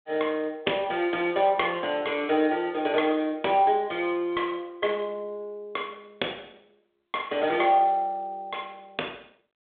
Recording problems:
telephone audio; 240 Hz to 3.6 kHz, G.726

